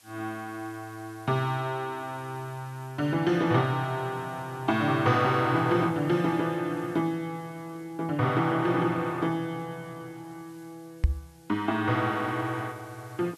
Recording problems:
background hiss; slope +1 dB per octave, SNR 28 dB
microphone bump; at 11 s; peak +8 dB vs average level

